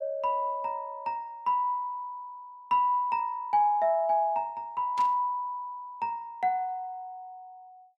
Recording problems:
static burst; at 5 s; peak -11 dB vs average level

